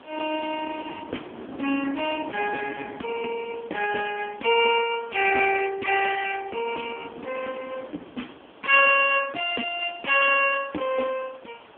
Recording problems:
telephone audio; 240 Hz to 3.1 kHz, AMR-NB
hiss; SNR 27 dB
wind noise; below 600 Hz, SNR 19 dB

